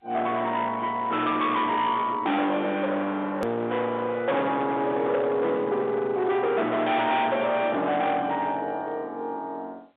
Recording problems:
telephone audio; 320 Hz to 3.8 kHz, G.711
distorted audio; hard clipping, signal-to-distortion ratio 8 dB
edit click; at 3.5 s

